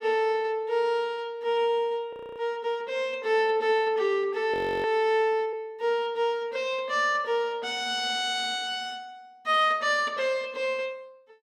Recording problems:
frozen audio; at 2 s and at 4.5 s

